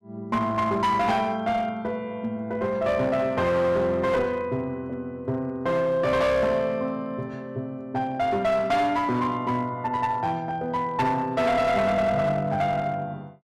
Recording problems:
distorted audio; hard clipping, uneven, signal-to-distortion ratio 10 dB

